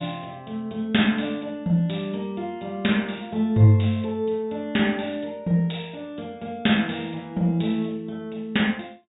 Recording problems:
treble missing; nothing above 4 kHz

